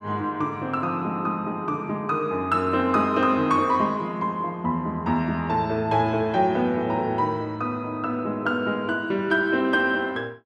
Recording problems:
none

